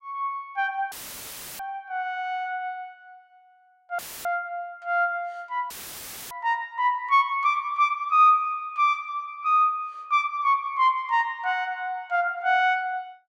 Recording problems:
audio cutting out; at 1 s for 0.5 s, at 4 s and at 5.5 s for 0.5 s; filled with static

